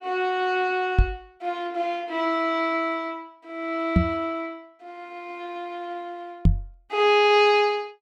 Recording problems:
microphone thump; at 1 s, at 4 s and at 6.5 s; peak +9 dB vs average level

